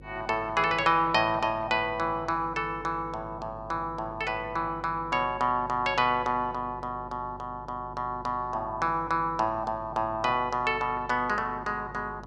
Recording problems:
hum; 50 Hz, harmonics up to 550 Hz, SNR 19 dB

